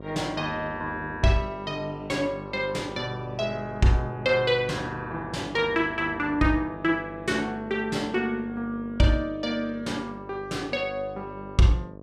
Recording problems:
hum; 50 Hz, harmonics up to 1.3 kHz, SNR 15 dB

